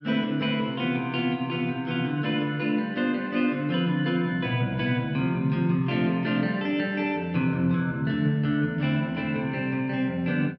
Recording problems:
none

